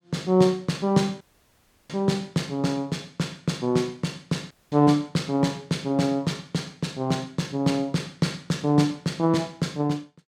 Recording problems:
dropout; at 1 s for 0.5 s and at 4.5 s

